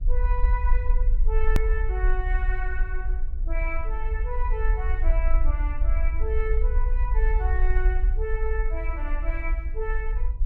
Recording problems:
hum; 60 Hz, harmonics up to 1.5 kHz, SNR 23 dB
rumble; below 48 Hz, SNR -7 dB
hard cut with a click; at 1.5 s

